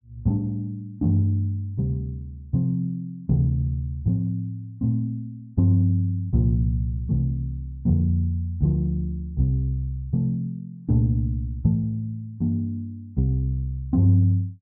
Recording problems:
none

